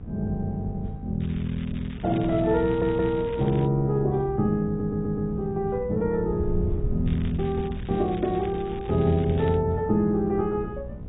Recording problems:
codec artefacts; AAC, log-spectral distance 2 dB, nothing above 3.2 kHz
hum; 60 Hz, harmonics up to 780 Hz, SNR 15 dB
wind noise; below 120 Hz, SNR 12 dB
crackling; from 1 to 3.5 s and from 7 to 9.5 s; loose cable, SNR 22 dB
audio stuttering; at 2.5 s and at 4.5 s

